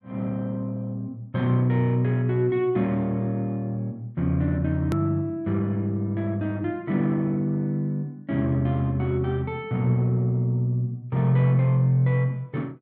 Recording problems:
click at an edit; at 5 s

